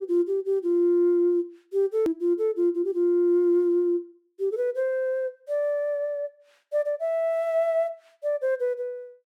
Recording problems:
edit click; at 2 s

